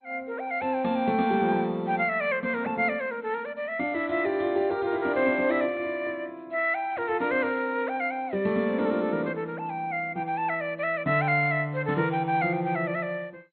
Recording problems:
lossy codec; MP2, log-spectral distance 2 dB, nothing above 4.2 kHz

